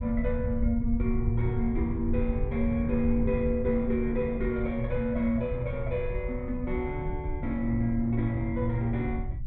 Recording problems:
rumble; below 88 Hz, SNR 5 dB

